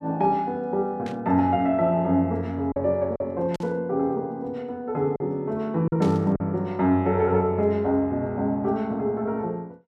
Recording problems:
packet loss; 2% of the sound replaced, filled with silence
static burst; at 1 s, at 3.5 s and at 6 s; peak -13 dB vs average level

